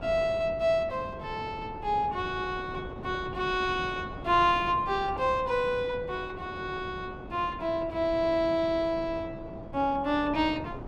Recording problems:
wind on the microphone; below 490 Hz, SNR 13 dB

